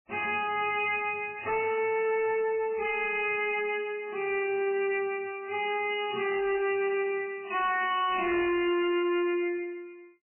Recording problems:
lossy codec; MP3, log-spectral distance 4 dB, nothing above 2.5 kHz
distorted audio; hard clipping, signal-to-distortion ratio 6 dB

